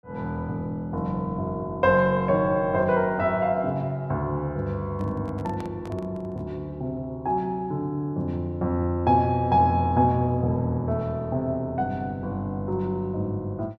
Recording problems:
microphone handling noise; from 5 to 6.5 s; peak -10 dB vs average level

